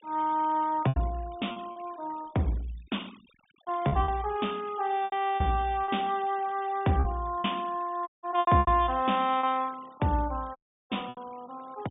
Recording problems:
treble missing; nothing above 3.7 kHz
noise reduction artefacts; signal-to-artefact ratio 23 dB
lost packets; 7% of the sound replaced, filled with repeated pitch periods
audio cutting out; at 8 s and at 11 s

